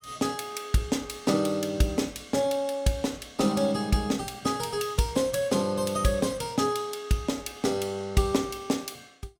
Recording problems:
none

